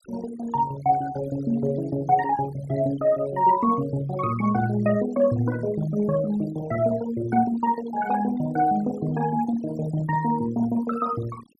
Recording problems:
denoising artefacts; signal-to-artefact ratio 18 dB

